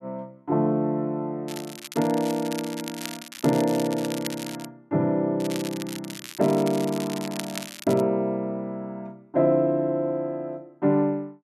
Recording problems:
crackle; from 1.5 to 4.5 s and from 5.5 to 8 s; loose cable, SNR 12 dB

